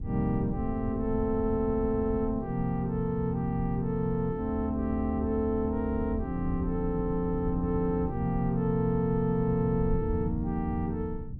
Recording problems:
wind on the microphone; below 120 Hz, SNR 9 dB

